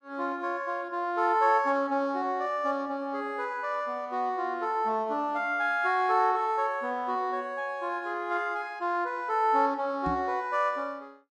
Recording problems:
microphone thump; at 10 s; peak -2 dB vs average level

